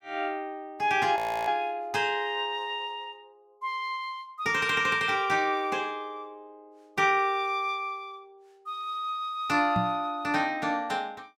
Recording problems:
frozen audio; at 1 s
knock on the microphone; at 10 s; peak +1 dB vs average level

